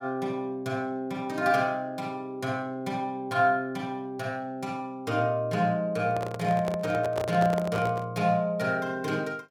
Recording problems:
microphone handling noise; from 6 to 8 s; peak -1 dB vs average level

